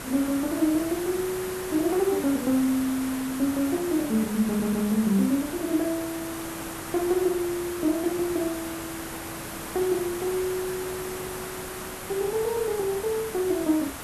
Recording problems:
hiss; slope -4 dB per octave, SNR 9 dB
audio stuttering; at 4.5 s

